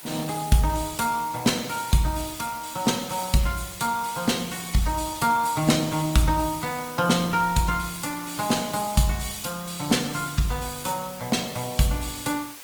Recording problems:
lossy codec; Opus, log-spectral distance 7 dB, nothing above 19 kHz
hiss; slope +1 dB per octave, SNR 14 dB

